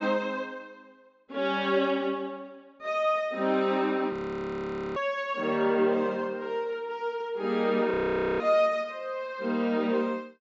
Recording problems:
treble cut off; nothing above 8 kHz
frozen audio; at 4 s for 1 s and at 8 s

